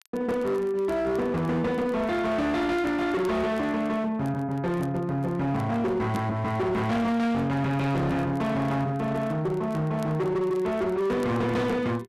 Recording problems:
distortion; hard clipping, signal-to-distortion ratio 8 dB
crackling; vinyl, SNR 29 dB

